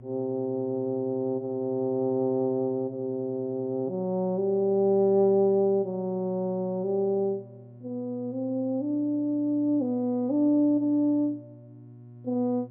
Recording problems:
electrical hum; 60 Hz, harmonics up to 720 Hz, SNR 21 dB

